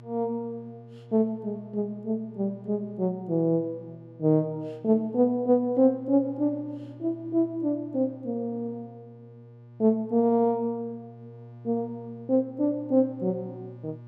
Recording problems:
hum; 60 Hz, harmonics up to 840 Hz, SNR 21 dB

